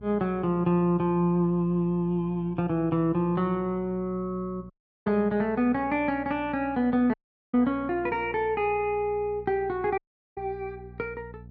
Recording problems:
hum; 60 Hz, harmonics up to 480 Hz, SNR 21 dB
audio cutting out; at 4.5 s, at 7 s and at 10 s

